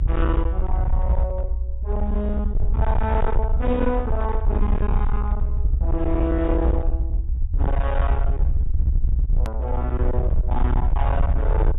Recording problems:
treble cut off; nothing above 4 kHz
distorted audio; hard clipping, uneven, signal-to-distortion ratio 7 dB
rumble; below 64 Hz, SNR -4 dB
edit click; at 9.5 s

